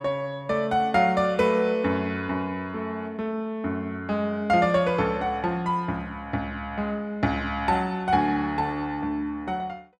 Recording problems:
none

